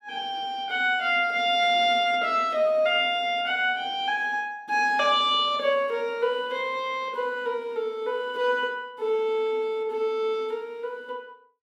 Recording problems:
none

